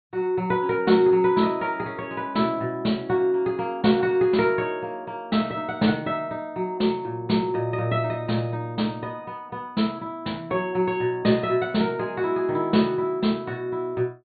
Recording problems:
treble missing; nothing above 4.5 kHz

